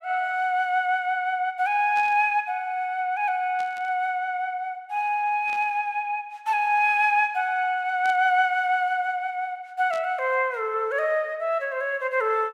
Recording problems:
burst of static; 5 times, first at 2 s; peak -14 dB vs average level

